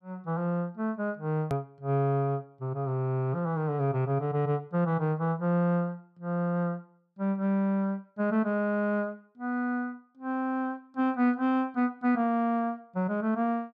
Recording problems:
edit click; at 1.5 s

